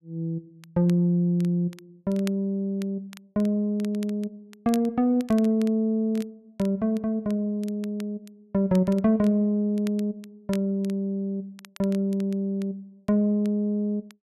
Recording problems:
crackling; vinyl, SNR 24 dB

